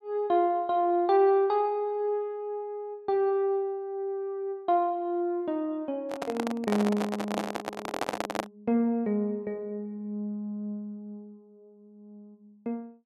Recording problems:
microphone handling noise; from 6 to 8.5 s; peak +3 dB vs average level

